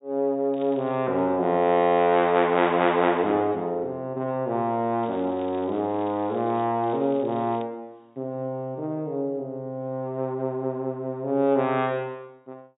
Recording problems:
low-pass filter; nothing above 4 kHz
crackling; at 0.5 s, from 5 to 6.5 s and at 7 s; loose cable, SNR 28 dB

